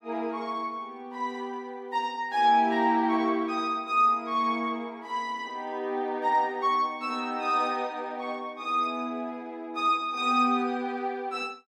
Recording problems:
none

